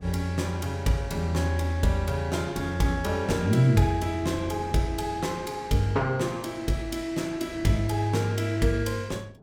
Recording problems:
wind noise; below 330 Hz, SNR 21 dB

